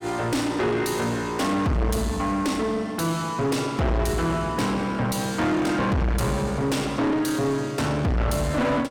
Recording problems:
distorted audio; soft clipping, signal-to-distortion ratio 5 dB

